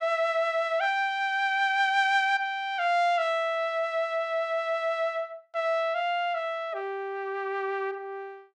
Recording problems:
none

